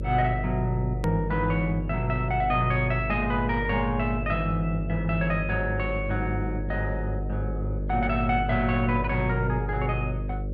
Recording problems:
electrical hum; 50 Hz, harmonics up to 600 Hz, SNR 5 dB
hard cut with a click; at 1 s

